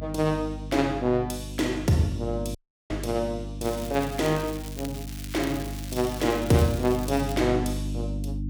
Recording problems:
electrical hum; 50 Hz, harmonics up to 300 Hz, SNR 8 dB
dropout; at 2.5 s
crackle; from 3.5 to 7.5 s; loose cable, SNR 14 dB

